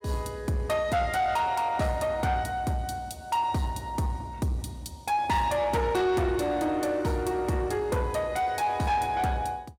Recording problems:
distortion; soft clipping, signal-to-distortion ratio 10 dB

